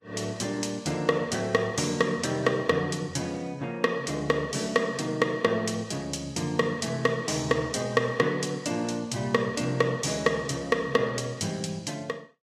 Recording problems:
codec artefacts; Vorbis, log-spectral distance 3 dB

